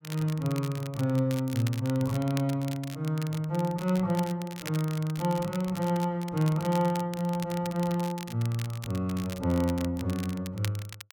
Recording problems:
crackle; vinyl, SNR 15 dB

